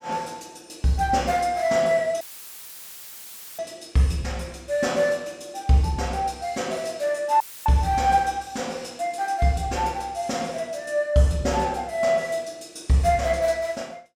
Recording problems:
dropout; at 2 s for 1.5 s and at 7.5 s; filled with static

